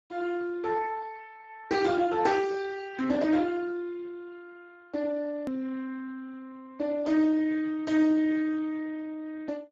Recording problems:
codec artefacts; Speex, log-spectral distance 3 dB, nothing above 13.1 kHz
edit click; at 5.5 s

